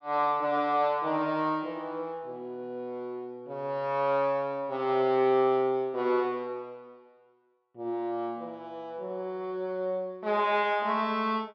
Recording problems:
none

